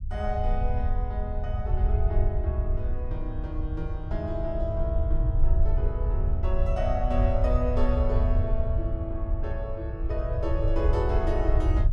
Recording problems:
rumble; below 74 Hz, SNR -4 dB

